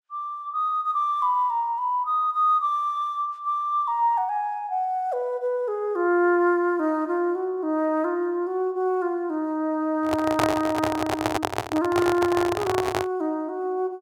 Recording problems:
handling noise; from 10 to 13 s; peak +4 dB vs average level

